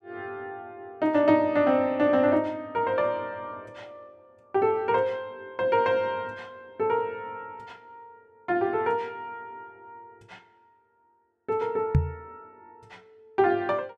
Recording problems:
microphone bump; at 12 s; peak +8 dB vs average level

